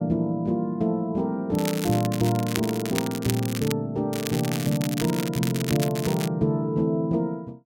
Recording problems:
crackle; from 1.5 to 3.5 s and from 4 to 6.5 s; loose cable, SNR 9 dB

